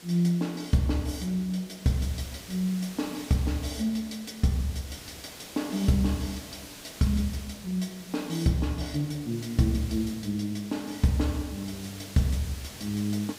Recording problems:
background hiss; slope -1 dB per octave, SNR 15 dB

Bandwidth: 15.5 kHz